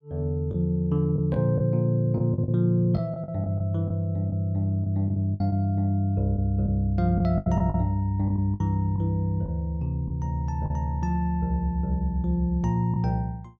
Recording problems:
lost packets; 7% of the sound replaced, filled with the last packet

